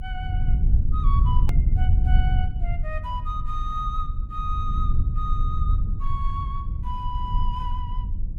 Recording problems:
electrical hum; 50 Hz, harmonics up to 800 Hz, SNR 17 dB
low-frequency rumble; below 74 Hz, SNR -8 dB
click at an edit; at 1.5 s

